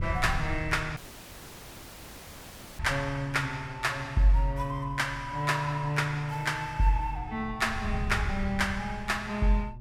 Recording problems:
electrical hum; 60 Hz, harmonics up to 600 Hz, SNR 18 dB
wind noise; below 98 Hz, SNR 10 dB
dropout; at 1 s for 2 s

